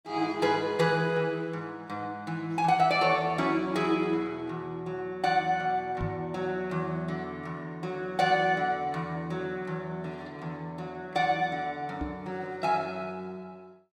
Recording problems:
microphone bump; at 6 s and at 12 s; peak -1 dB vs average level

